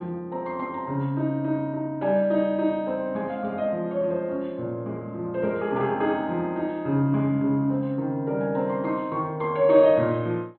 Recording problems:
treble cut off; nothing above 4.2 kHz

